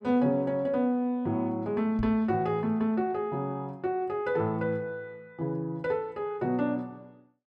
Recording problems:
microphone bump; at 2 s; peak -2 dB vs average level

